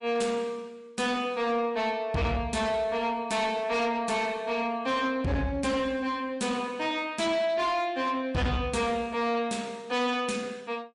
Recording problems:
codec artefacts; MP3, log-spectral distance 2 dB, nothing above 10.7 kHz
distorted audio; soft clipping, signal-to-distortion ratio 11 dB

